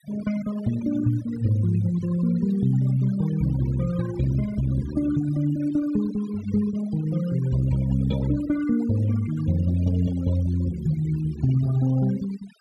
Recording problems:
noise reduction artefacts; signal-to-artefact ratio 17 dB

